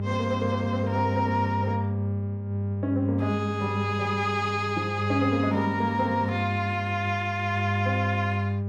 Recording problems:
hum; 50 Hz, harmonics up to 800 Hz, SNR 3 dB

